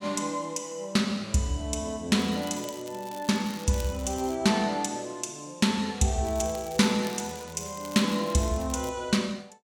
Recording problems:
crackling; from 2 to 4.5 s and from 6.5 to 9 s; loose cable, SNR 18 dB

